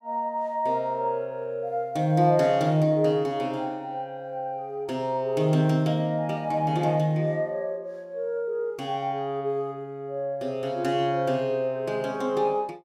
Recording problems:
none

